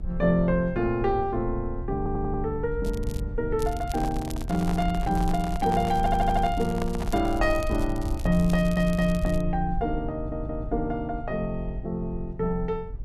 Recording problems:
rumble; below 66 Hz, SNR 8 dB
audio stuttering; 4 times, first at 2 s
crackling; at 3 s and from 3.5 to 9.5 s; loose cable, SNR 19 dB
microphone handling noise; from 4 to 7.5 s; peak -4 dB vs average level

